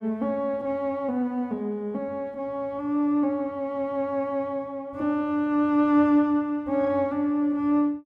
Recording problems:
none

